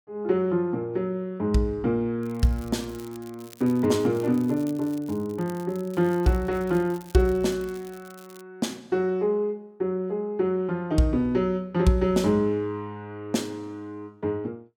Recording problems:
crackle; at 2 s and from 3 to 8.5 s; loose cable, SNR 24 dB

